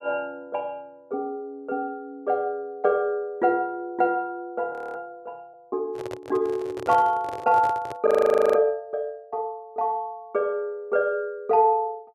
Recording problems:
audio freezing; at 4.5 s and at 8 s
microphone handling noise; from 6 to 8 s; peak -4 dB vs average level

